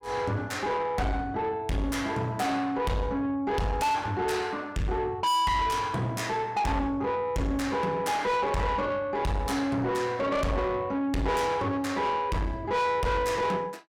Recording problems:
distorted audio; soft clipping, signal-to-distortion ratio 6 dB

